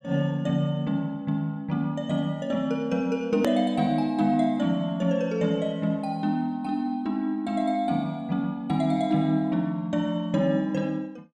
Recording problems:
click at an edit; at 3.5 s

